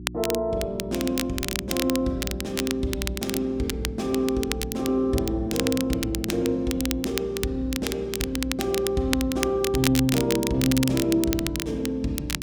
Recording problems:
hum; 60 Hz, harmonics up to 360 Hz, SNR 13 dB
crackling; vinyl, SNR 6 dB

